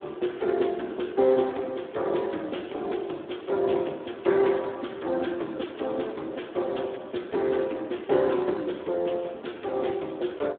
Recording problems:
telephone audio; 240 Hz to 3.6 kHz, Speex

